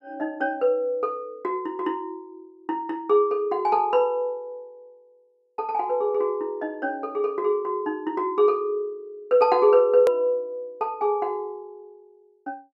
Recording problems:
click at an edit; at 10 s

